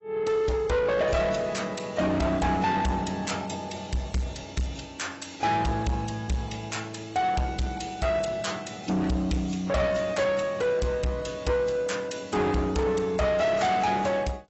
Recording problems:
codec artefacts; AAC, log-spectral distance 5 dB, nothing above 7.8 kHz
distortion; soft clipping, signal-to-distortion ratio 8 dB

